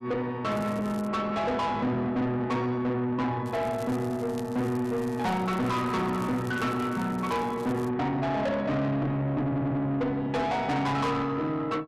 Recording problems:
distorted audio; soft clipping, signal-to-distortion ratio 8 dB
crackling; at 0.5 s and from 3.5 to 8 s; loose cable, SNR 23 dB
audio stuttering; at 9.5 s

